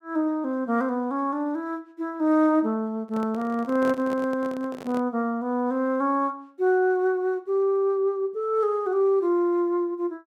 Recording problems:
microphone handling noise; from 3 to 5 s; peak -7 dB vs average level

